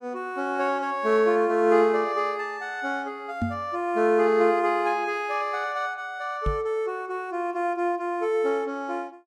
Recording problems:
knock on the microphone; at 3.5 s and at 6.5 s; peak +1 dB vs average level

